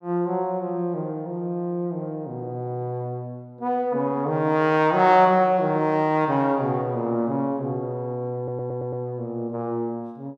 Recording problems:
audio stuttering; at 8.5 s

